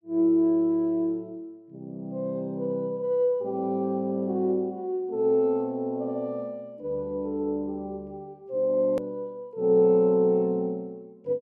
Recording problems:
click at an edit; at 9 s

